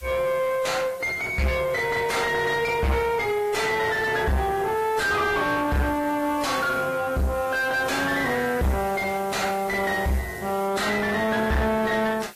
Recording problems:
lossy compression; AAC, log-spectral distance 5 dB
distortion; soft clipping, signal-to-distortion ratio 6 dB
hiss; slope 0 dB per octave, SNR 20 dB

